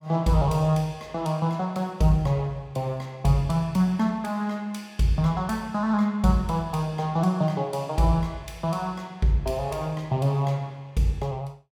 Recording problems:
none

